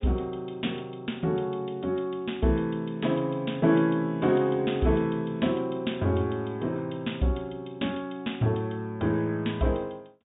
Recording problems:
treble missing; nothing above 4 kHz

